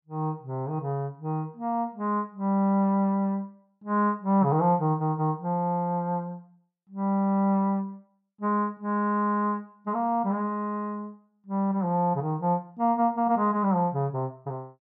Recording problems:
none

